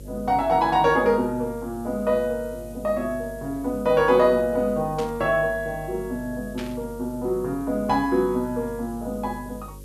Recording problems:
electrical hum; 50 Hz, harmonics up to 550 Hz, SNR 18 dB
background hiss; slope +4 dB per octave, SNR 26 dB
static burst; at 5 s and at 6.5 s; peak -9 dB vs average level

